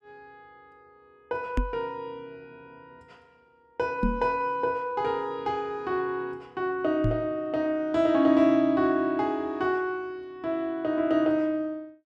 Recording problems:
knock on the microphone; at 1.5 s, at 4 s and at 7 s; peak +4 dB vs average level

